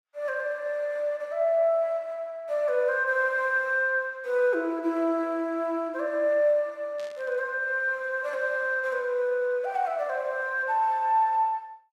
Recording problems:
static burst; at 7 s; peak -16 dB vs average level

